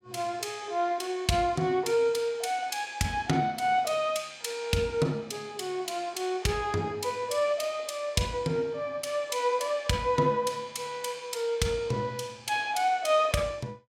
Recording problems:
none

